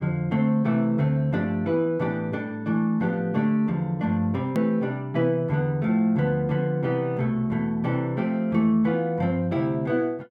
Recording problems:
edit click; at 4.5 s

